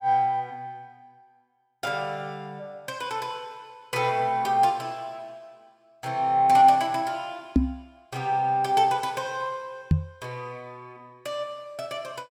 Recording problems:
microphone thump; at 7.5 s and at 10 s; peak +9 dB vs average level

